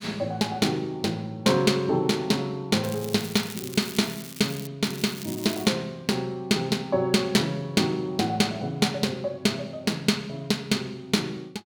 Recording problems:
crackling; from 3 to 4.5 s and at 5 s; loose cable, SNR 13 dB

